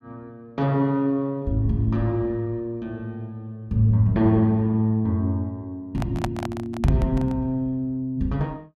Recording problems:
microphone handling noise; from 6 to 7.5 s; peak 0 dB vs average level

